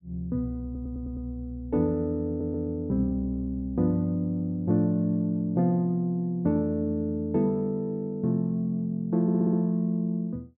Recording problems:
audio stuttering; at 0.5 s, at 2.5 s and at 9 s

